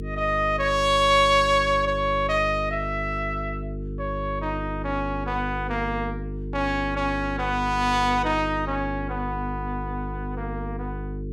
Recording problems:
hum; 50 Hz, harmonics up to 450 Hz, SNR 8 dB

